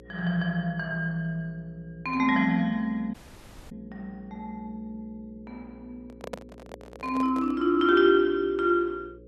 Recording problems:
mains hum; 60 Hz, harmonics up to 540 Hz, SNR 24 dB
audio cutting out; at 3 s for 0.5 s
microphone handling noise; from 6 to 7.5 s; peak -6 dB vs average level

